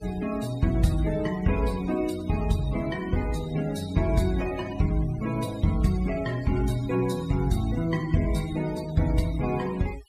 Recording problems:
denoising artefacts; signal-to-artefact ratio 18 dB

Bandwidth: 15 kHz